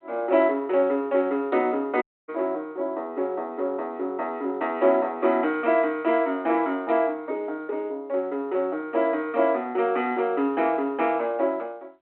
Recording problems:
telephone audio; 260 Hz to 3.3 kHz, G.726
dropout; at 2 s

